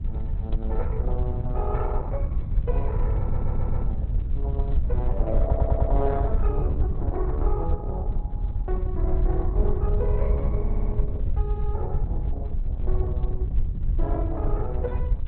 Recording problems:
lossy compression; Opus, log-spectral distance 2 dB
wind on the microphone; below 72 Hz, SNR -8 dB
audio stuttering; at 3 s, at 5.5 s and at 11 s

